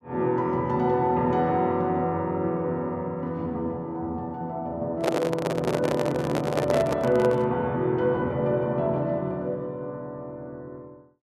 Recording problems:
microphone handling noise; from 5 to 7.5 s; peak +5 dB vs average level

